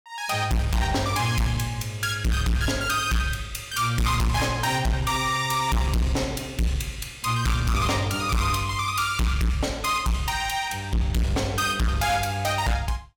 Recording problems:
distortion; hard clipping, signal-to-distortion ratio 6 dB

